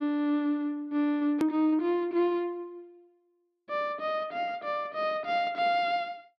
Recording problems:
hard cut with a click; at 1.5 s

